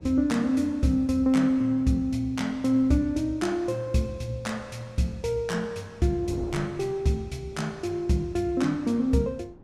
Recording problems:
wind on the microphone; below 390 Hz, SNR 22 dB

